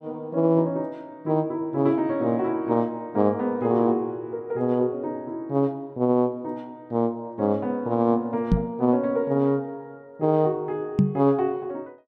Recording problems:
microphone bump; at 8.5 s and at 11 s; peak +9 dB vs average level

